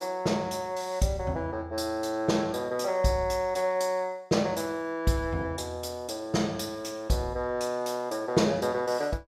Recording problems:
none

